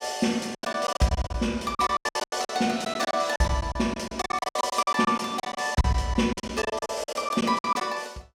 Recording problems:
packet loss; 19% of the sound replaced, filled with silence

